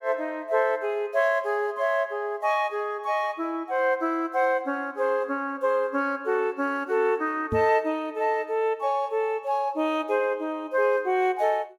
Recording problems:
microphone thump; at 7.5 s; peak -2 dB vs average level

